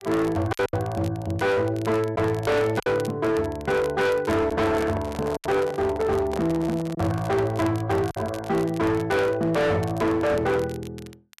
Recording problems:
distortion; hard clipping, signal-to-distortion ratio 8 dB
crackle; vinyl, SNR 22 dB
packet loss; 3% of the sound replaced, filled with silence
microphone handling noise; from 4.5 to 7.5 s; peak -5 dB vs average level

